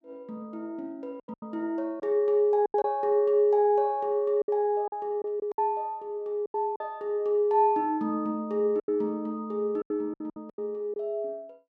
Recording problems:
packet loss; 9% of the sound replaced, filled with silence

